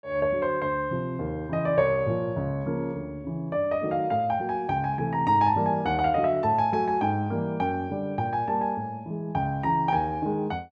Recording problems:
none

